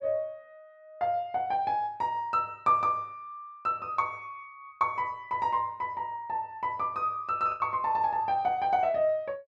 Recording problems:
packet loss; 0.9% of the sound replaced, filled with the last packet

